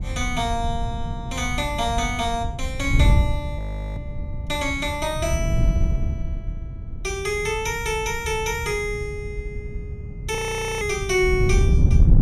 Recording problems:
wind noise; below 110 Hz, SNR 1 dB
audio freezing; at 3.5 s and at 10 s

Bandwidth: 15 kHz